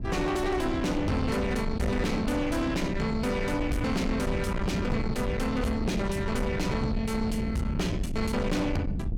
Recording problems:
distorted audio; soft clipping, signal-to-distortion ratio 7 dB
rumble; below 220 Hz, SNR 4 dB

